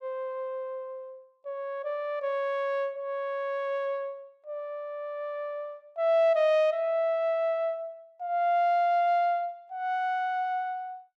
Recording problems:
none

